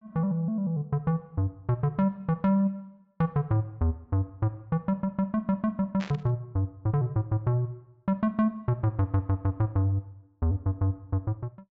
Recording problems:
treble missing; nothing above 7.6 kHz
burst of static; at 6 s; peak -7 dB vs average level

